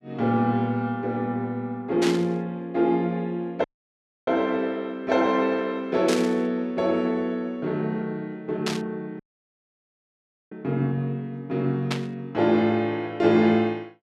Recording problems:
burst of static; 4 times, first at 2 s; peak 0 dB vs average level
audio cutting out; at 3.5 s for 0.5 s and at 9 s for 1.5 s

